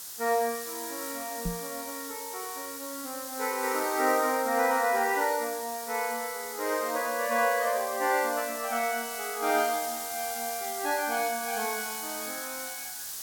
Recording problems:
hiss; SNR 7 dB
knock on the microphone; at 1.5 s; peak 0 dB vs average level

